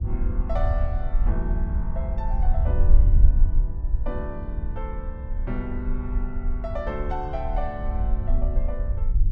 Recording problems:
low-frequency rumble; below 56 Hz, strongest tone 22 Hz, SNR -8 dB

